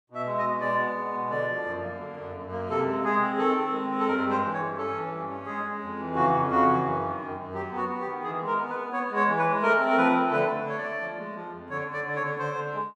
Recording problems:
none

